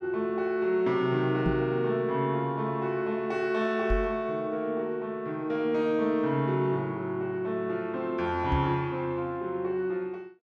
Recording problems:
knock on the microphone; at 1.5 s, at 4 s and at 8.5 s; peak +3 dB vs average level

